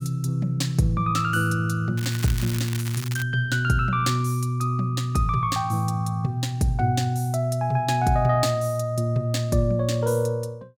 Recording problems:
crackling; from 2 to 3 s; loose cable, SNR 12 dB

